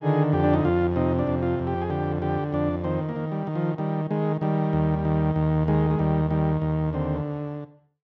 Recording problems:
none

